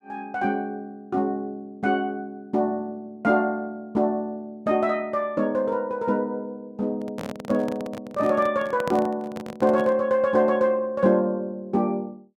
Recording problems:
microphone handling noise; from 7 to 10 s; peak -2 dB vs average level

